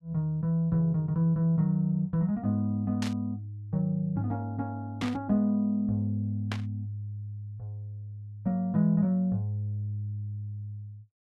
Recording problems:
static burst; at 3 s, at 5 s and at 6.5 s; peak -3 dB vs average level

